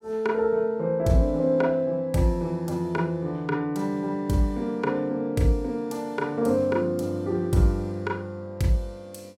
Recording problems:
none

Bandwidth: 16.5 kHz